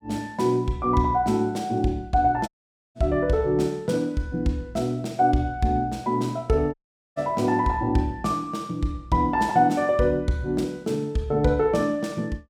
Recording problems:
dropout; at 2.5 s and at 6.5 s

